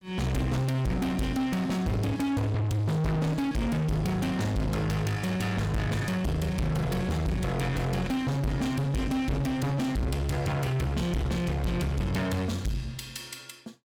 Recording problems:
distorted audio; soft clipping, signal-to-distortion ratio 6 dB

